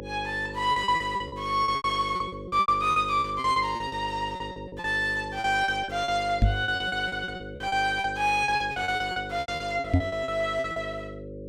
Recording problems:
hum; 50 Hz, harmonics up to 550 Hz, SNR 12 dB
lost packets; 18% of the sound replaced, filled with repeated pitch periods
knock on the microphone; at 6.5 s and at 10 s; peak +8 dB vs average level

